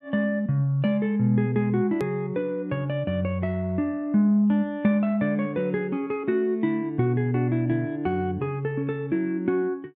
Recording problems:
edit click; at 2 s

